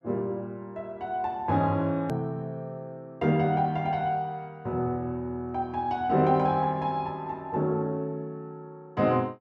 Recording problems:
hard cut with a click; at 2 s

